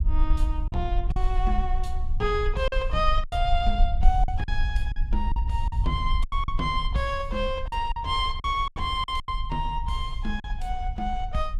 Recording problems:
low-frequency rumble; below 52 Hz, SNR 1 dB
packet loss; 8% of the sound replaced, filled with silence

